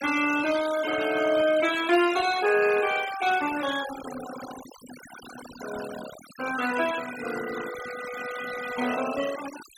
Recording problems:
denoising artefacts; signal-to-artefact ratio 12 dB

